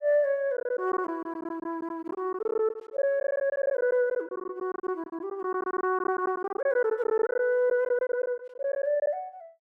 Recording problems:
packet loss; 14% of the sound replaced, filled with silence

